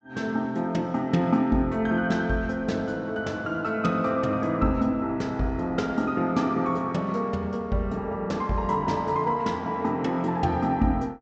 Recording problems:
low-pass filter; nothing above 8 kHz

